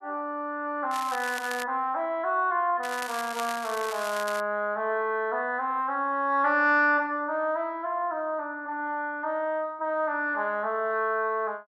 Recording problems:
crackle; at 1 s and from 3 to 4.5 s; loose cable, SNR 11 dB

